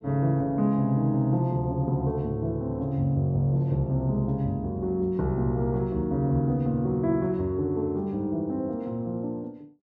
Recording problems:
none

